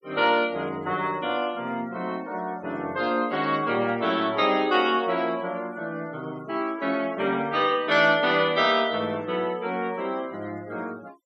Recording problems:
noise reduction artefacts; signal-to-artefact ratio 24 dB

